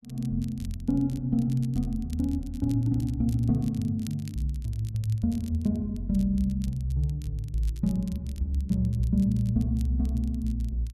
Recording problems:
crackle; vinyl, SNR 25 dB

